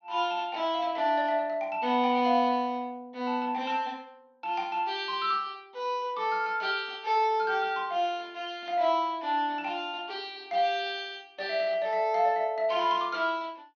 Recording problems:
low-pass filter; nothing above 6.3 kHz

